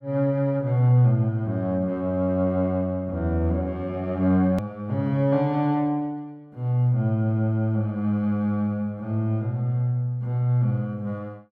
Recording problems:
hard cut with a click; at 4.5 s

